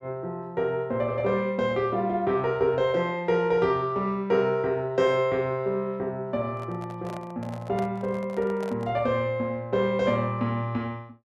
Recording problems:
handling noise; from 6.5 to 9 s; peak -7 dB vs average level

